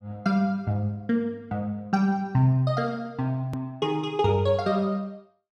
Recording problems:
edit click; at 3.5 s

